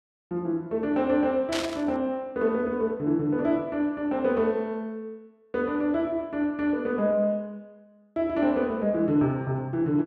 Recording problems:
static burst; at 1.5 s; peak -1 dB vs average level

